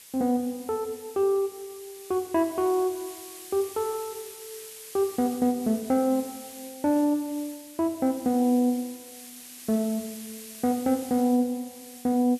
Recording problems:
hiss; SNR 16 dB

